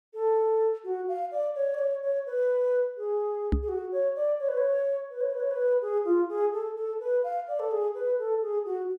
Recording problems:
microphone thump; at 3.5 s; peak +5 dB vs average level

